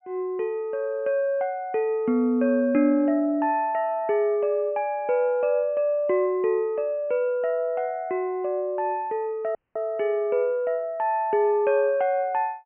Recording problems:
treble missing; nothing above 3 kHz
dropout; at 9.5 s

